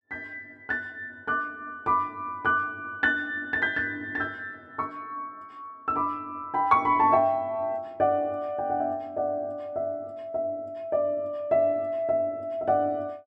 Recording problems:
none

